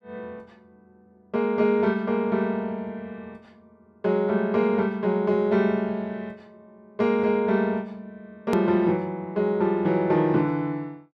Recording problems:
hard cut with a click; at 8.5 s

